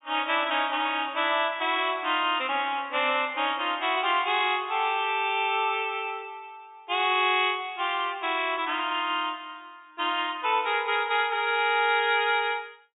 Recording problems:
treble cut off; nothing above 4 kHz

